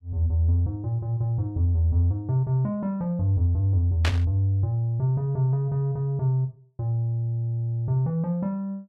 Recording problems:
static burst; at 4 s; peak +1 dB vs average level

